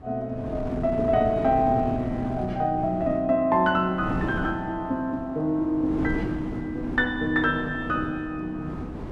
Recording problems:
wind on the microphone; below 380 Hz, SNR 9 dB

